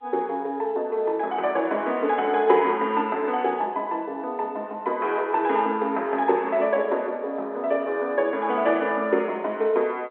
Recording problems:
phone line; 280 Hz to 3.6 kHz, G.711

